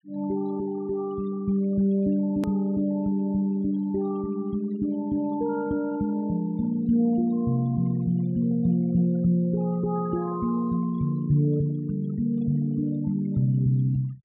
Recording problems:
treble missing; nothing above 4 kHz
denoising artefacts; signal-to-artefact ratio 23 dB
edit click; at 2.5 s

